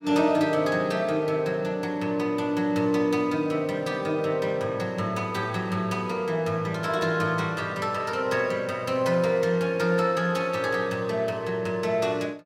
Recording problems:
none

